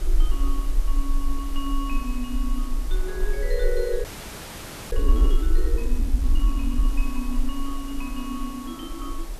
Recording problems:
background hiss; slope -3 dB per octave, SNR 11 dB
low-frequency rumble; below 40 Hz, strongest tone 22 Hz, SNR -5 dB
wind on the microphone; below 700 Hz, SNR 14 dB
frozen audio; at 4 s for 1 s

